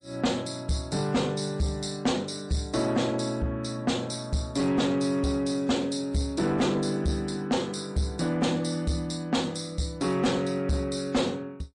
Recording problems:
lossy compression; MP3, log-spectral distance 3 dB, nothing above 9.2 kHz
distorted audio; soft clipping, signal-to-distortion ratio 6 dB

